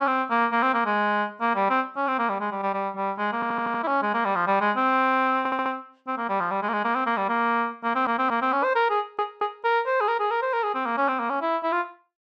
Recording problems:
stutter; 4 times, first at 3.5 s

